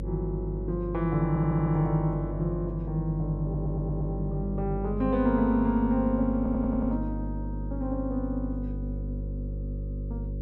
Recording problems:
electrical hum; 50 Hz, harmonics up to 550 Hz, SNR 6 dB
audio stuttering; at 1.5 s, at 3.5 s and at 6.5 s

